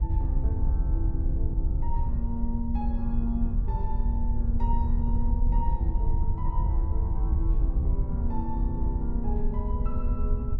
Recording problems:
wind on the microphone; below 66 Hz, SNR -7 dB

